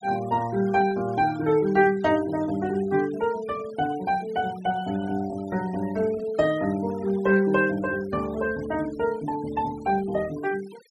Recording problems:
denoising artefacts; signal-to-artefact ratio 21 dB

